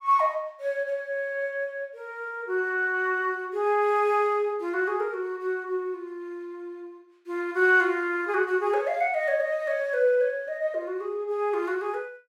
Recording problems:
none

